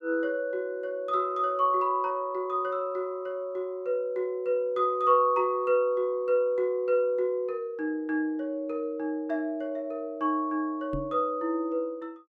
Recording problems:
microphone thump; at 11 s; peak -3 dB vs average level

